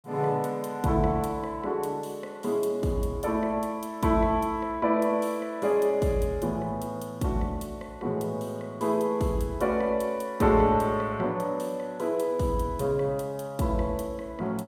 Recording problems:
none

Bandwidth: 16.5 kHz